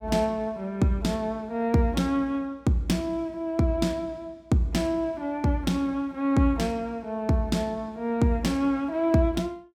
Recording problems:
none

